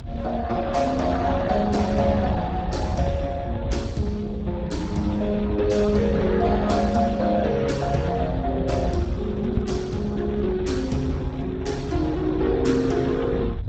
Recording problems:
lossy codec; Speex, log-spectral distance 2 dB, nothing above 7.6 kHz
rumble; below 120 Hz, SNR 9 dB

